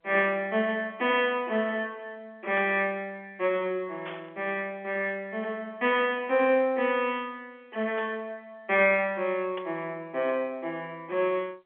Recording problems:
phone line; 280 Hz to 3.7 kHz, G.711
static burst; 4 times, first at 2.5 s; peak -8 dB vs average level

